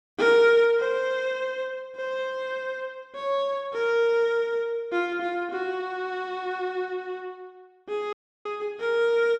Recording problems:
dropout; at 8 s

